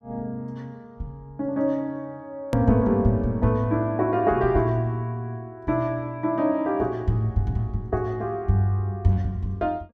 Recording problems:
click at an edit; at 2.5 s

